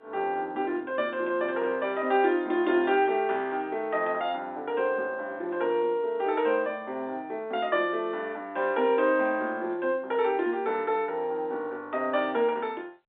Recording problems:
phone line; 240 Hz to 3.6 kHz, G.711

